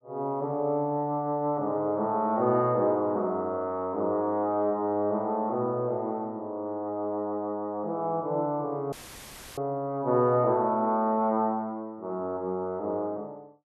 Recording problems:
audio cutting out; at 9 s for 0.5 s; filled with static

